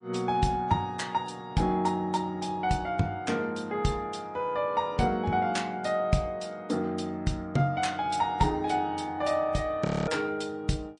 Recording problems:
lossy compression; MP3, log-spectral distance 2 dB, nothing above 8.2 kHz
audio freezing; at 10 s

